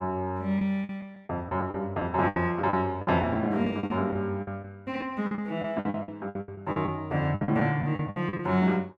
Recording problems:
lost packets; 14% of the sound replaced, filled with the last packet

